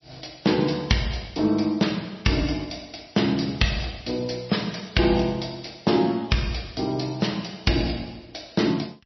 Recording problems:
lossy compression; MP3, log-spectral distance 8 dB, nothing above 5.7 kHz

